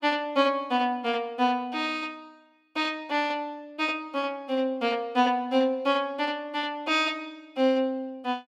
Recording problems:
none

